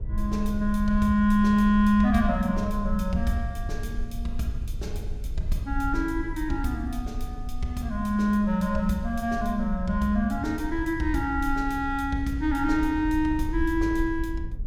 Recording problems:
low-frequency rumble; below 62 Hz, SNR 9 dB

